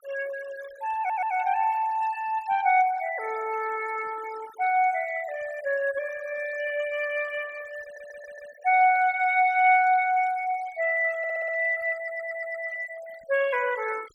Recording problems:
denoising artefacts; signal-to-artefact ratio 20 dB
audio stuttering; 4 times, first at 1 s

